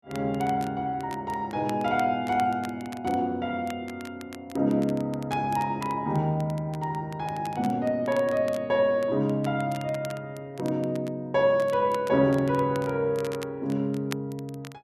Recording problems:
crackle; vinyl, SNR 21 dB

